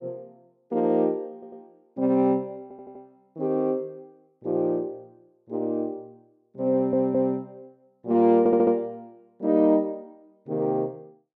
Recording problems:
stutter; 4 times, first at 1.5 s

